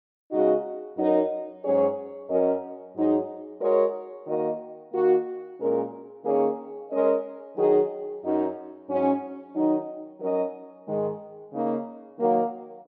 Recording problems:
none

